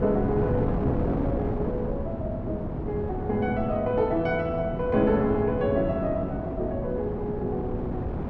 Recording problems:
wind on the microphone; below 370 Hz, SNR 3 dB

